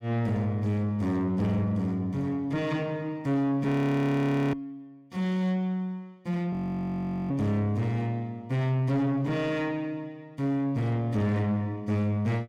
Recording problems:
distorted audio; soft clipping, signal-to-distortion ratio 11 dB
frozen audio; at 3.5 s for 1 s and at 6.5 s for 1 s

